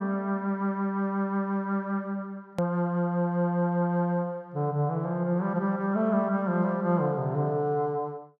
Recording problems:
edit click; at 2.5 s

